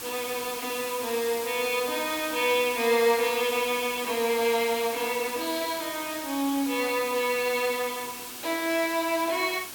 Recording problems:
hiss; SNR 9 dB

